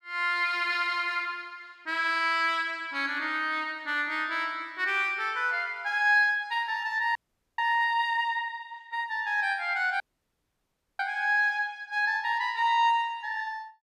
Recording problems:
audio cutting out; at 7 s and at 10 s for 1 s

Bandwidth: 14.5 kHz